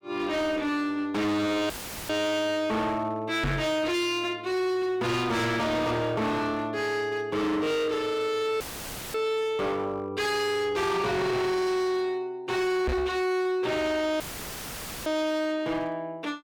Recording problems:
distortion; hard clipping, signal-to-distortion ratio 7 dB
dropout; at 1.5 s, at 8.5 s for 0.5 s and at 14 s for 1 s; filled with static
microphone thump; at 3.5 s and at 13 s; peak +3 dB vs average level

